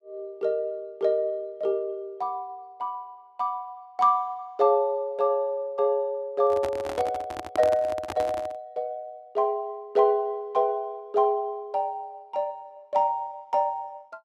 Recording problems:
handling noise; from 6.5 to 8.5 s; peak -2 dB vs average level

